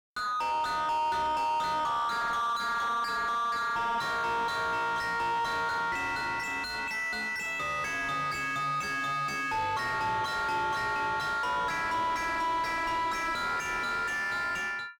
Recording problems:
distorted audio; soft clipping, signal-to-distortion ratio 6 dB

